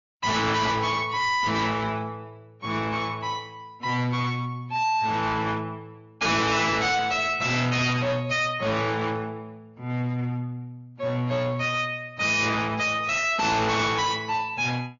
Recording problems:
treble missing; nothing above 6.9 kHz
lossy compression; AAC, log-spectral distance 3 dB
distorted audio; hard clipping, signal-to-distortion ratio 6 dB

